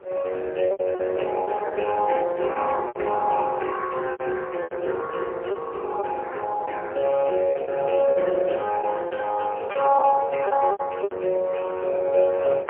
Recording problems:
phone line; 340 Hz to 2.1 kHz, AMR-NB, then MP3
wind on the microphone; below 620 Hz, SNR 17 dB
lost packets; 9% of the sound replaced, filled with repeated pitch periods

